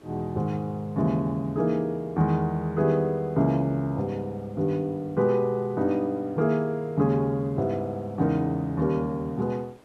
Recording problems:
background hiss; slope -7 dB per octave, SNR 29 dB

